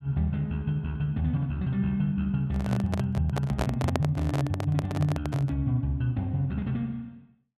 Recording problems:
microphone handling noise; from 2.5 to 5.5 s; peak +3 dB vs average level

